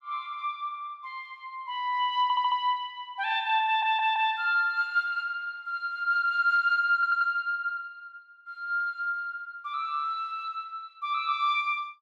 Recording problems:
stutter; at 2 s, at 3.5 s and at 7 s

